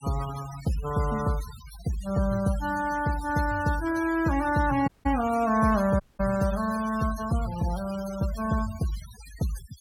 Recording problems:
noise reduction artefacts; signal-to-artefact ratio 15 dB
audio cutting out; at 5 s and at 6 s

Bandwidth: 17 kHz